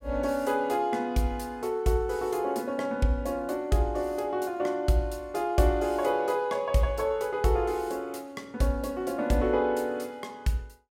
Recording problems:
none

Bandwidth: 16 kHz